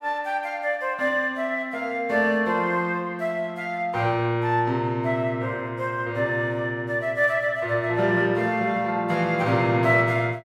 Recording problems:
none

